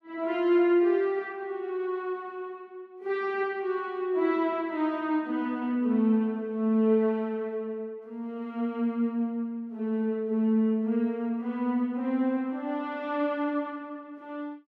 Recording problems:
none

